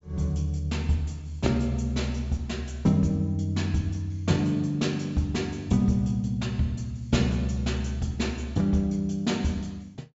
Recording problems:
low-pass filter; nothing above 8 kHz

